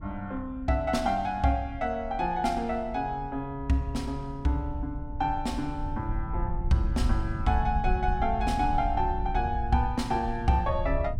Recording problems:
wind noise; below 74 Hz, SNR 7 dB

